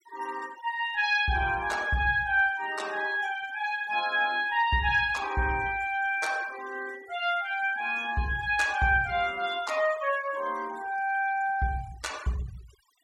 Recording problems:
noise reduction artefacts; signal-to-artefact ratio 20 dB

